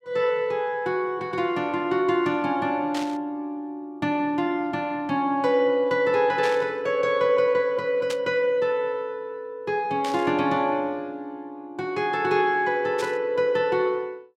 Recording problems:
static burst; 5 times, first at 3 s; peak -5 dB vs average level

